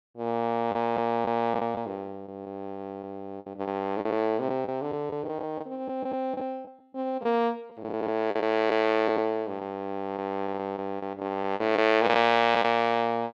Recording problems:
packet loss; 7% of the sound replaced, filled with the last packet

